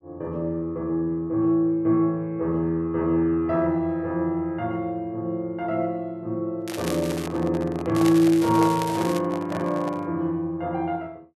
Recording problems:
microphone handling noise; from 6.5 to 10 s; peak -5 dB vs average level
crackling; at 6.5 s and from 8 to 9 s; loose cable, SNR 13 dB

